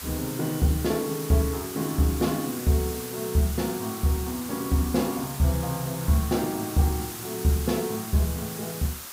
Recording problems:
hiss; SNR 9 dB

